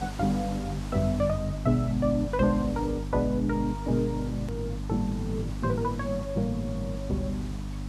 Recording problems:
electrical hum; 50 Hz, harmonics up to 300 Hz, SNR 7 dB
background hiss; slope -4 dB per octave, SNR 17 dB
hard cut with a click; at 4.5 s

